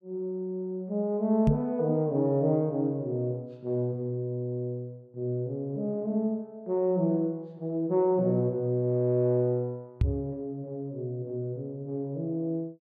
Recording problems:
knock on the microphone; at 1.5 s and at 10 s; peak +8 dB vs average level

